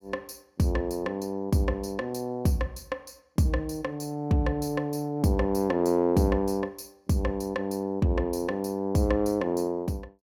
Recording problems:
none

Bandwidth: 17.5 kHz